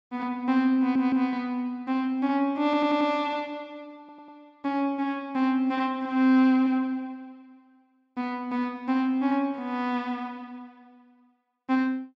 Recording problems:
audio stuttering; at 1 s, at 2.5 s and at 4 s

